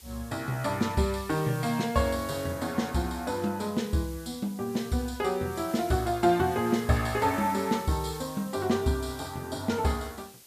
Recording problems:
hiss; SNR 18 dB

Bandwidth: 14.5 kHz